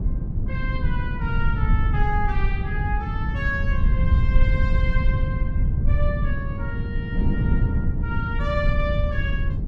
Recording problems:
low-frequency rumble; below 92 Hz, SNR -6 dB
wind on the microphone; below 190 Hz, SNR 0 dB

